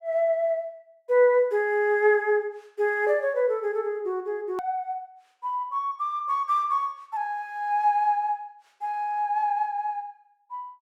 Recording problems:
hard cut with a click; at 4.5 s

